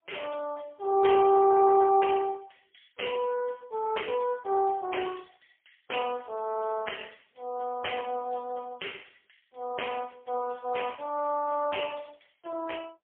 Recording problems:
telephone audio; 300 Hz to 3.2 kHz, AMR-NB, then MP3

